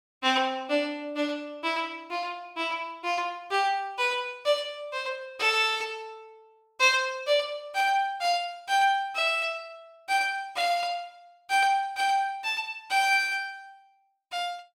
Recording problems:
none

